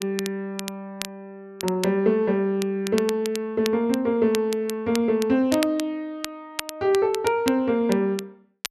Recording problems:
crackling; vinyl, SNR 13 dB

